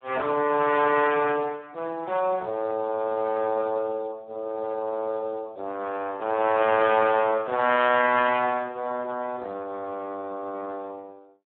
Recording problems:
telephone audio; 260 Hz to 2.7 kHz, Speex

